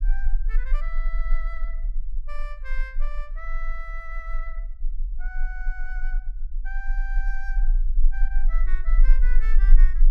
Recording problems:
rumble; below 32 Hz, strongest tone 20 Hz, SNR -13 dB

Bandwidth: 14.5 kHz